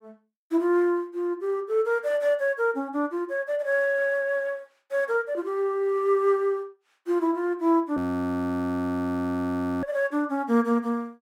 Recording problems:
frozen audio; at 8 s for 2 s

